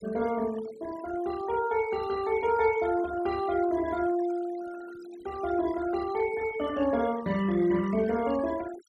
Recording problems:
noise reduction artefacts; signal-to-artefact ratio 18 dB

